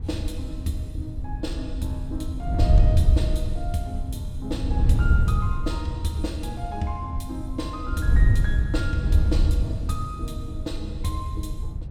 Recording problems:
wind noise; below 94 Hz, SNR -5 dB

